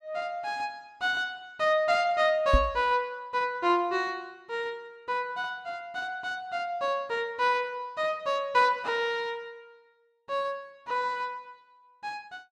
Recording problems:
knock on the microphone; at 2.5 s; peak +8 dB vs average level

